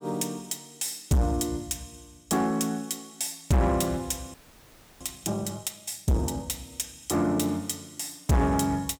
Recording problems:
distorted audio; soft clipping, signal-to-distortion ratio 6 dB
audio freezing; at 4.5 s for 0.5 s

